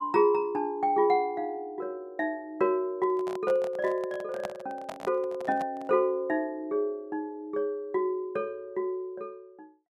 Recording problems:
handling noise; from 3 to 6 s; peak -2 dB vs average level

